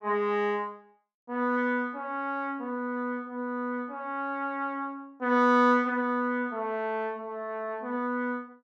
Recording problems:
none

